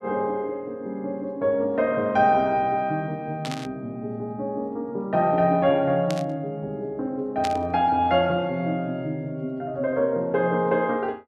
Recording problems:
burst of static; at 3.5 s, at 6 s and at 7.5 s; peak -3 dB vs average level

